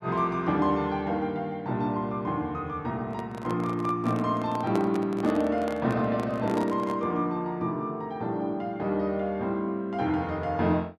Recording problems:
handling noise; from 3 to 7 s; peak -1 dB vs average level

